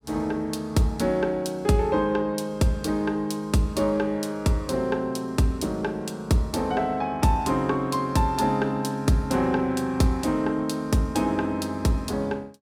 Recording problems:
none

